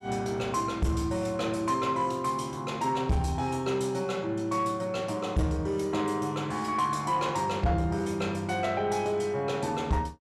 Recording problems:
distorted audio; soft clipping, signal-to-distortion ratio 11 dB

